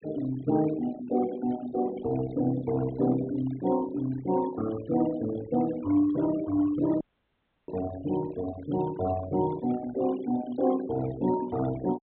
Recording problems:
treble cut off; nothing above 4 kHz
noise reduction artefacts; signal-to-artefact ratio 16 dB
dropout; at 7 s for 0.5 s

